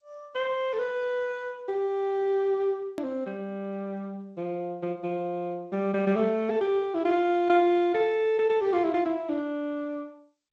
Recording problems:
lossy compression; Speex, then G.722, log-spectral distance 2 dB, nothing above 13.3 kHz
hard cut with a click; at 3 s

